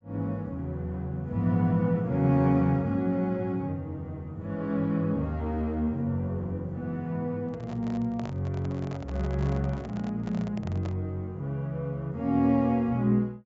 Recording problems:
low-pass filter; nothing above 8 kHz
handling noise; from 7.5 to 11 s; peak -9 dB vs average level

